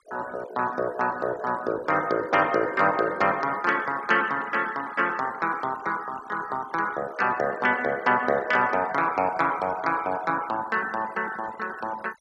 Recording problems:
denoising artefacts; signal-to-artefact ratio 19 dB

